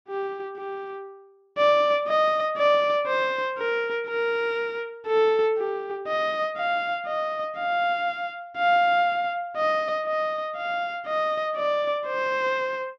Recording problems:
none

